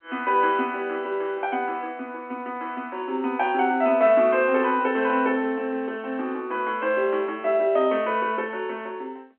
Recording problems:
phone line; 220 Hz to 3.2 kHz, G.711

